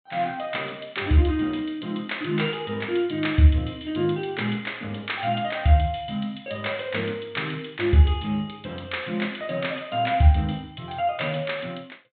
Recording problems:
low-pass filter; nothing above 4 kHz

